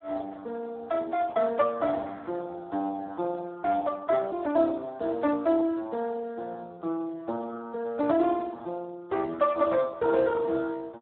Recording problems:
phone line; 220 Hz to 2 kHz, Speex

